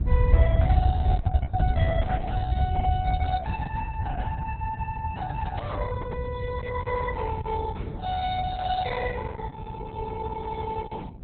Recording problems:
lossy codec; Opus, log-spectral distance 2 dB, nothing above 3.8 kHz
electrical hum; 60 Hz, harmonics up to 720 Hz, SNR 13 dB
low-frequency rumble; below 96 Hz, SNR -5 dB
microphone bump; at 1.5 s and at 5.5 s; peak -1 dB vs average level

